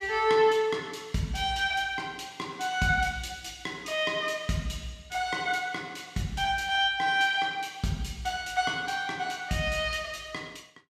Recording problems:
none

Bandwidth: 14.5 kHz